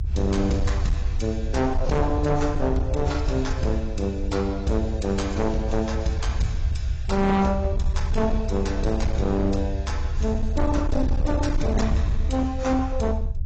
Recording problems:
codec artefacts; AAC, log-spectral distance 2 dB, nothing above 7.6 kHz
distorted audio; hard clipping, signal-to-distortion ratio 12 dB
low-frequency rumble; below 76 Hz, SNR 2 dB

